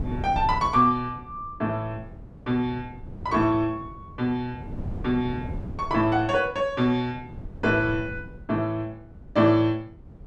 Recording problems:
wind on the microphone; below 190 Hz, SNR 14 dB

